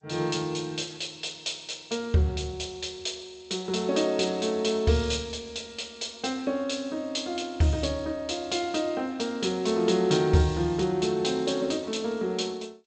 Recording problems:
lossy codec; G.722, log-spectral distance 5 dB, nothing above 7.8 kHz

